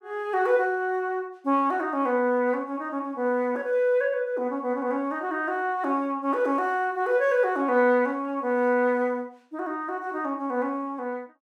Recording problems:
none

